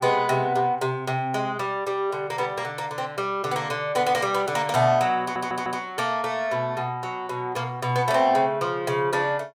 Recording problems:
stutter; at 5 s

